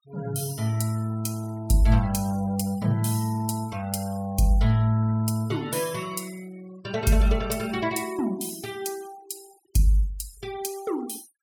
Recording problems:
noise reduction artefacts; signal-to-artefact ratio 21 dB

